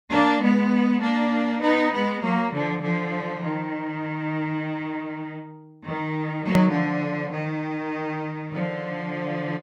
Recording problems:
click at an edit; at 6.5 s

